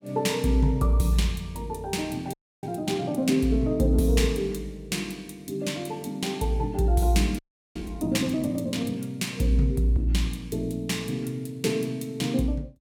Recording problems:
audio freezing; at 2.5 s and at 7.5 s

